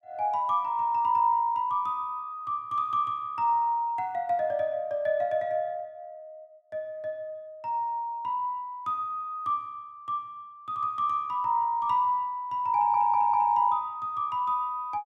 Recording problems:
stutter; at 13 s

